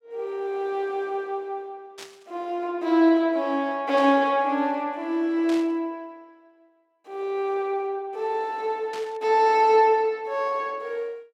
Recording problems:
static burst; 4 times, first at 2 s; peak -11 dB vs average level

